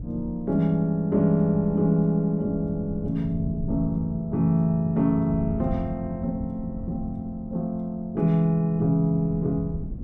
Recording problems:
wind on the microphone; below 160 Hz, SNR 13 dB

